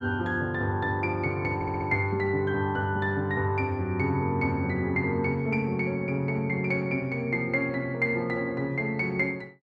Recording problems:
audio stuttering; at 1.5 s

